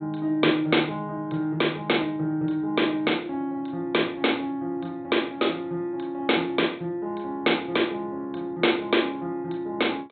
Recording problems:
low-pass filter; nothing above 4 kHz

